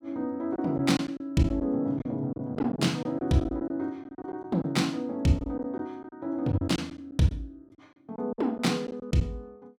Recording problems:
packet loss; 9% of the sound replaced, filled with silence

